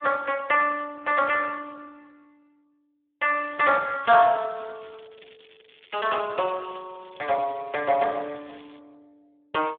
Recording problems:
telephone audio; 320 Hz to 3.3 kHz, Speex
crackle; from 3.5 to 6 s and from 6 to 9 s; loose cable, SNR 27 dB

